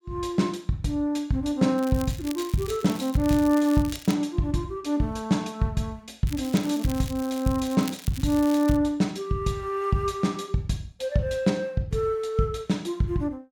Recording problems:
crackling; from 2 to 4 s and from 6.5 to 9 s; loose cable, SNR 16 dB

